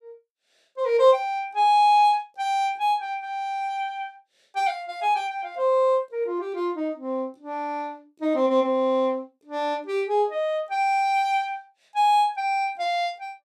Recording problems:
none

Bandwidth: 14 kHz